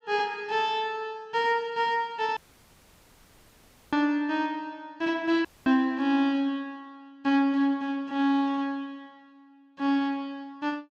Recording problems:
audio cutting out; at 2.5 s for 1.5 s and at 5.5 s

